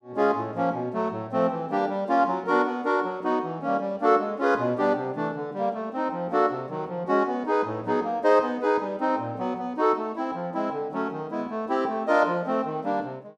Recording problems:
none

